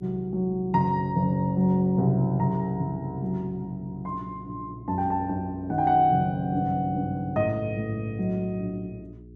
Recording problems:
electrical hum; 60 Hz, harmonics up to 420 Hz, SNR 22 dB

